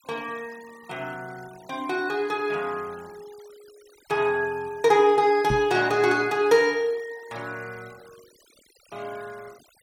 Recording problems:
noise reduction artefacts; signal-to-artefact ratio 26 dB
microphone bump; at 5.5 s; peak -1 dB vs average level

